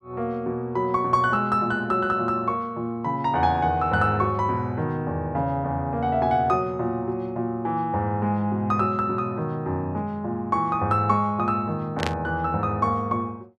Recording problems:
burst of static; at 12 s; peak 0 dB vs average level

